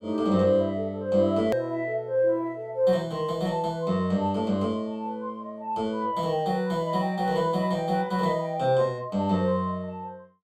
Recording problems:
click at an edit; at 1.5 s

